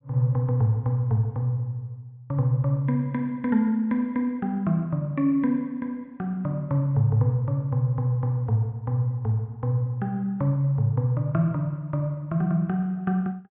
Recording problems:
treble missing; nothing above 3.8 kHz

